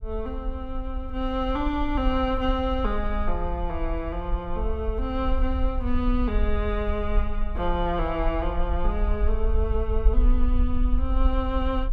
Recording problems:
rumble; below 52 Hz, SNR 0 dB

